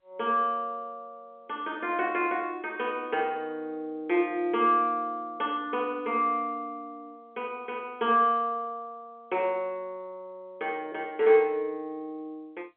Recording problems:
phone line; 260 Hz to 3.7 kHz, G.711

